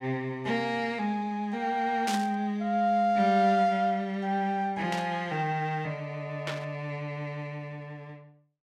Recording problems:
static burst; at 2 s, at 5 s and at 6.5 s; peak -1 dB vs average level

